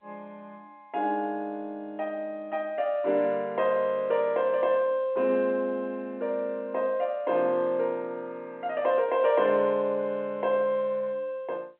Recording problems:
phone line; 240 Hz to 3.3 kHz, G.711

